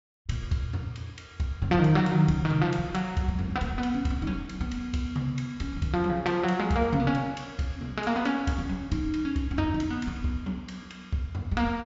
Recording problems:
treble missing; nothing above 7.5 kHz

